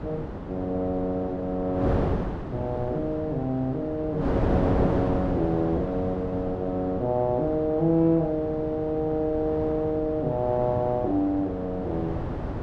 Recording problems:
wind noise; below 500 Hz, SNR 5 dB

